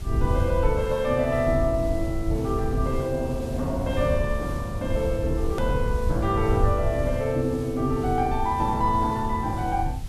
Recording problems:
background hiss; slope -3 dB per octave, SNR 17 dB
low-frequency rumble; below 84 Hz, SNR 6 dB
edit click; at 5.5 s

